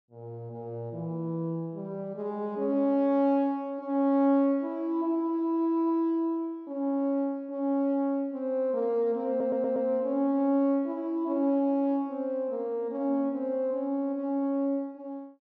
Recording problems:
audio stuttering; at 9.5 s

